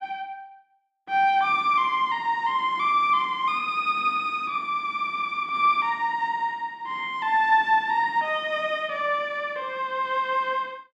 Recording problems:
none

